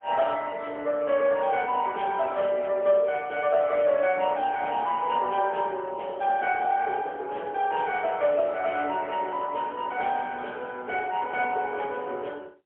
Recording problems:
telephone audio; 320 Hz to 3.2 kHz, AMR-NB, then MP3

